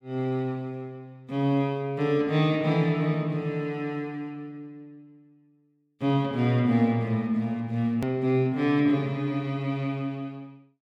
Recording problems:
click at an edit; at 8 s

